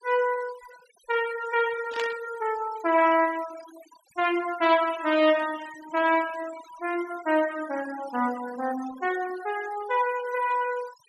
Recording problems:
denoising artefacts; signal-to-artefact ratio 16 dB
static burst; at 2 s; peak -3 dB vs average level

